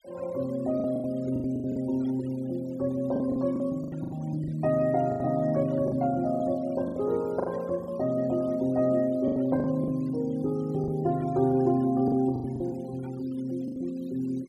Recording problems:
denoising artefacts; signal-to-artefact ratio 25 dB
packet loss; 10% of the sound replaced, filled with the last packet

